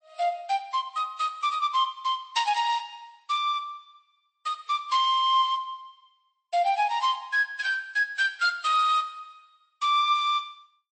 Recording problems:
codec artefacts; MP3, log-spectral distance 2 dB, nothing above 8.2 kHz

